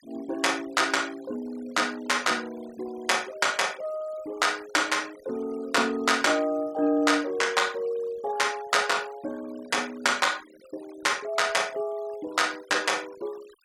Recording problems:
denoising artefacts; signal-to-artefact ratio 22 dB

